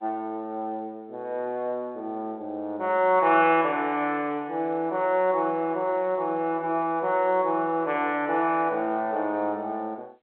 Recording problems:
telephone audio; 190 Hz to 3.5 kHz, G.711

